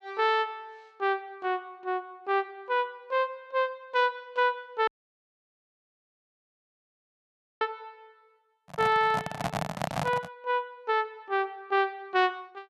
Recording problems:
audio cutting out; at 5 s for 2.5 s
microphone handling noise; from 8.5 to 10 s; peak +3 dB vs average level

